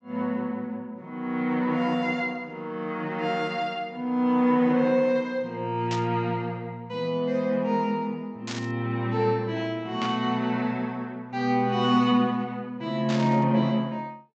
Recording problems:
low-pass filter; nothing above 8 kHz
burst of static; 4 times, first at 6 s; peak -4 dB vs average level

